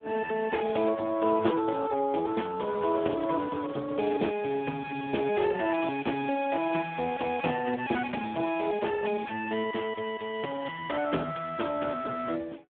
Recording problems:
telephone audio; 240 Hz to 2.8 kHz, Speex

